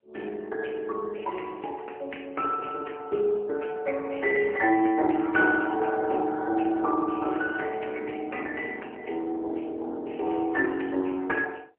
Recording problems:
telephone audio; 260 Hz to 2.2 kHz, AMR-NB

